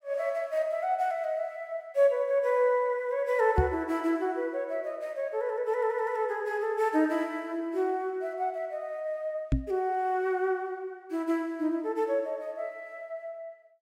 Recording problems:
microphone thump; at 3.5 s and at 9.5 s; peak +7 dB vs average level

